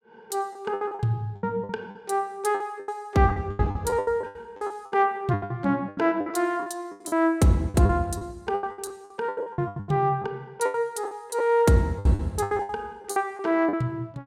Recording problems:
lost packets; 19% of the sound replaced, filled with the last packet

